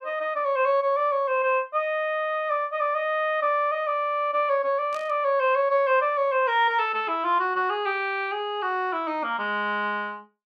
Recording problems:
burst of static; at 5 s; peak -14 dB vs average level

